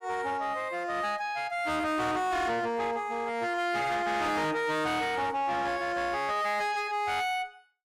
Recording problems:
distortion; soft clipping, signal-to-distortion ratio 7 dB

